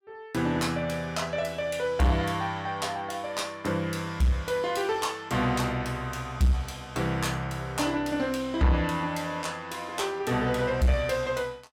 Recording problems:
distorted audio; soft clipping, signal-to-distortion ratio 11 dB

